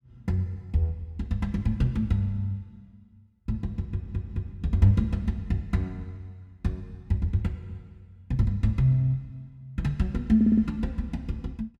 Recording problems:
audio stuttering; at 4 s and at 10 s

